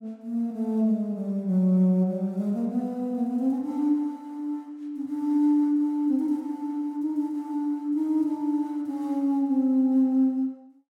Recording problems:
none

